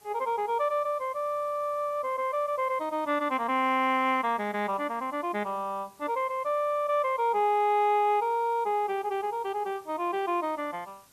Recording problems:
hiss; slope -2 dB per octave, SNR 29 dB

